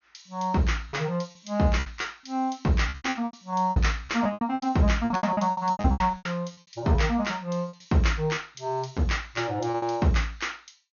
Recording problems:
treble missing; nothing above 6.7 kHz
lost packets; 14% of the sound replaced, filled with repeated pitch periods

